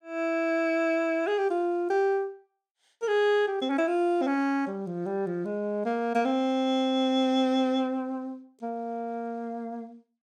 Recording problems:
none

